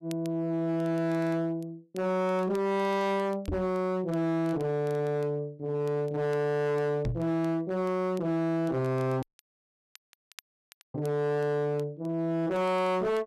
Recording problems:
distortion; hard clipping, signal-to-distortion ratio 8 dB
crackle; vinyl, SNR 29 dB
microphone thump; at 3.5 s and at 7 s; peak +1 dB vs average level
dropout; at 9 s for 1.5 s

